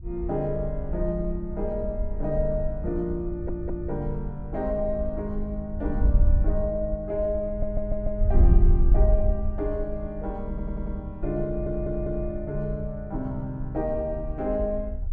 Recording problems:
wind on the microphone; below 60 Hz, SNR 0 dB
audio stuttering; 4 times, first at 3.5 s

